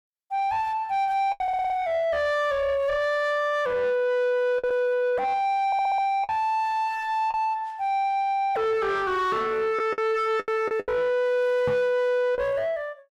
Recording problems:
distortion; soft clipping, signal-to-distortion ratio 9 dB
packet loss; 4% of the sound replaced, filled with the last packet
audio stuttering; at 1.5 s and at 5.5 s
microphone thump; at 12 s; peak +1 dB vs average level

